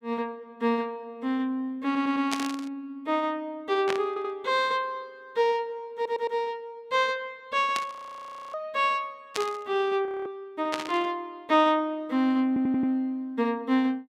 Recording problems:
stutter; 4 times, first at 2 s
static burst; 5 times, first at 2.5 s; peak +2 dB vs average level
audio freezing; at 8 s for 0.5 s and at 10 s

